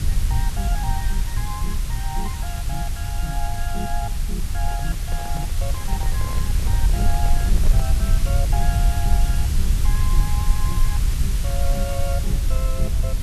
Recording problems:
hiss; slope +1 dB per octave, SNR 2 dB
rumble; below 66 Hz, SNR -9 dB
handling noise; from 4.5 to 8 s; peak 0 dB vs average level

